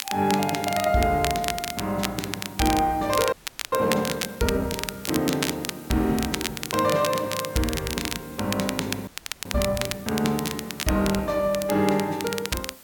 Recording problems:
background hiss; slope -2 dB per octave, SNR 19 dB
crackling; vinyl, SNR 6 dB
frozen audio; at 3.5 s and at 9 s

